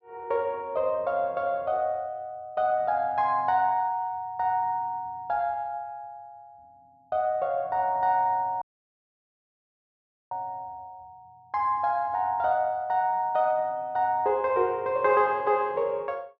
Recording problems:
dropout; at 8.5 s for 1.5 s

